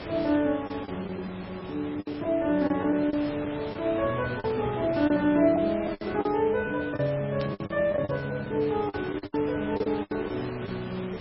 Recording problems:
lossy compression; MP3, log-spectral distance 10 dB
electrical hum; 50 Hz, harmonics up to 700 Hz, SNR 21 dB
background hiss; SNR 12 dB
packet loss; 10% of the sound replaced, filled with the last packet
static burst; at 7.5 s; peak -9 dB vs average level

